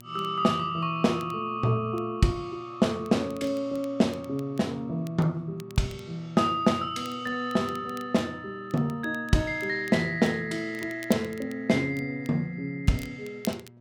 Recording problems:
hum; 60 Hz, harmonics up to 960 Hz, SNR 22 dB
crackle; vinyl, SNR 23 dB

